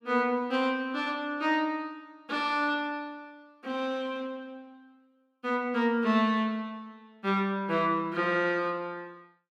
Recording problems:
none

